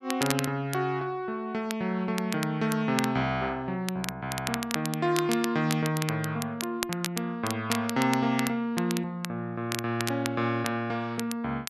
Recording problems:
crackling; vinyl, SNR 8 dB

